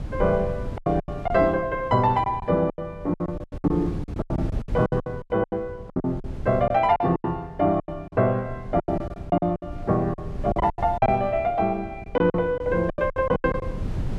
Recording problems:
wind on the microphone; below 140 Hz, SNR 12 dB
packet loss; 17% of the sound replaced, filled with silence

